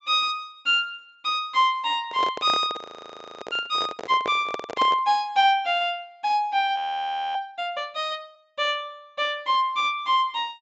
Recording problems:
treble missing; nothing above 7.7 kHz
microphone handling noise; from 2 to 5 s; peak -2 dB vs average level
audio freezing; at 3 s for 0.5 s and at 7 s for 0.5 s

